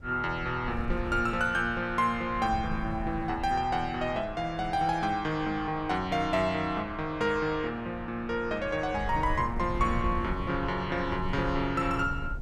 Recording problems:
wind noise; below 110 Hz, SNR 11 dB

